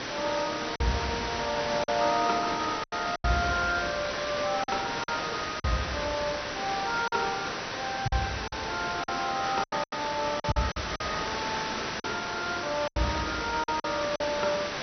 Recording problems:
treble missing; nothing above 6.1 kHz
hiss; slope -3 dB per octave, SNR 2 dB
packet loss; 7% of the sound replaced, filled with silence

